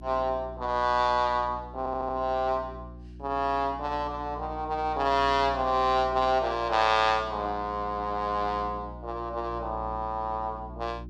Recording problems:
hum; 60 Hz, harmonics up to 360 Hz, SNR 16 dB
audio stuttering; at 2 s

